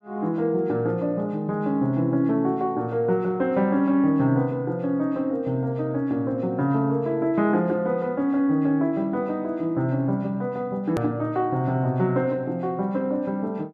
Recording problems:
hard cut with a click; at 11 s

